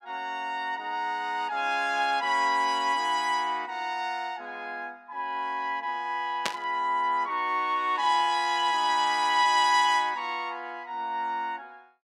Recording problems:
static burst; at 6.5 s; peak +3 dB vs average level

